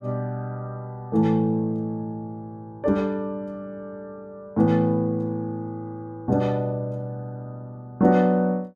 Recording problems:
none

